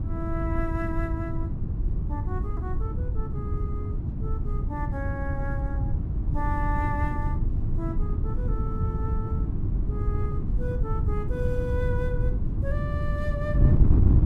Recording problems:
wind noise; below 120 Hz, SNR -8 dB

